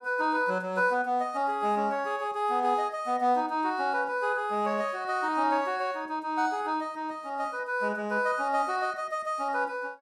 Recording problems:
none

